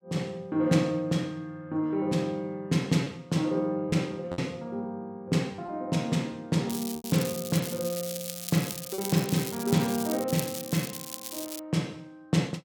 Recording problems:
packet loss; 2% of the sound replaced, filled with repeated pitch periods
crackle; from 6.5 to 12 s; loose cable, SNR 7 dB

